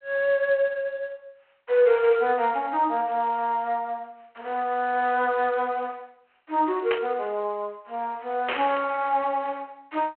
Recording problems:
phone line; 320 Hz to 3.2 kHz, G.726
static burst; at 7 s and at 8.5 s; peak 0 dB vs average level

